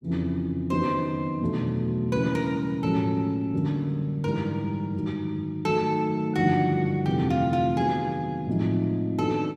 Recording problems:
none

